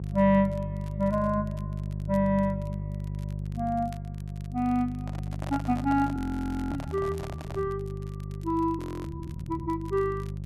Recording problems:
electrical hum; 50 Hz, harmonics up to 400 Hz, SNR 6 dB
crackling; vinyl, SNR 28 dB
handling noise; from 5 to 7.5 s; peak -6 dB vs average level
audio freezing; at 6 s for 0.5 s and at 9 s

